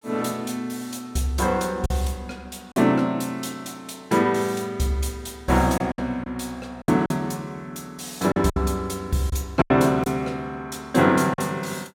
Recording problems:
packet loss; 5% of the sound replaced, filled with silence

